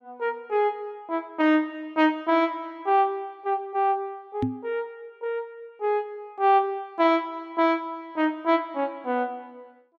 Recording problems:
microphone thump; at 4.5 s; peak +3 dB vs average level

